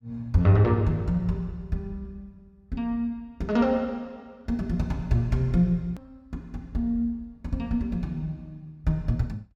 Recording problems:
click at an edit; at 6 s

